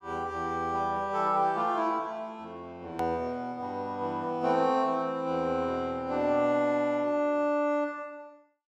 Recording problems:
click at an edit; at 3 s

